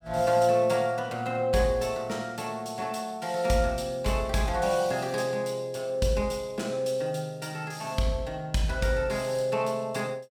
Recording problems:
none

